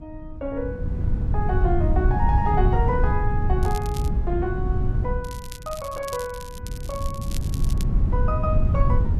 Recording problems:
wind noise; below 100 Hz, SNR -5 dB
crackling; at 3.5 s and from 5 to 8 s; loose cable, SNR 12 dB

